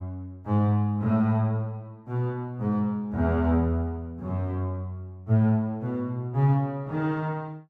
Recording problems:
none

